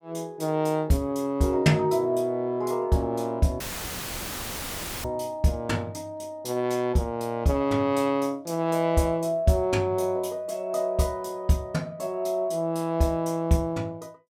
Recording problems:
dropout; at 3.5 s for 1.5 s; filled with static

